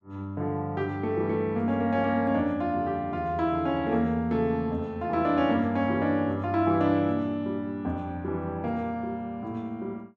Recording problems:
none

